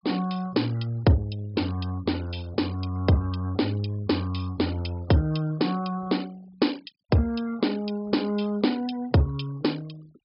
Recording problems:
treble missing; nothing above 5.5 kHz
denoising artefacts; signal-to-artefact ratio 23 dB

